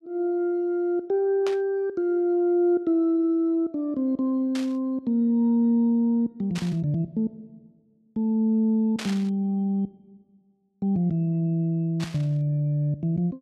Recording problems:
static burst; 5 times, first at 1.5 s; peak -6 dB vs average level

